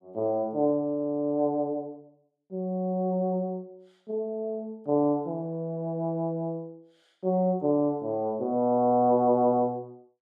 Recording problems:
none

